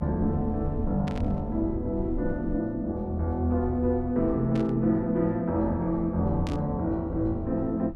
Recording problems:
rumble; below 76 Hz, SNR 13 dB
static burst; at 1 s, at 4.5 s and at 6.5 s; peak -10 dB vs average level

